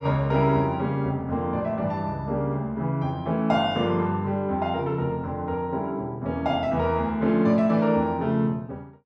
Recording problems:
none

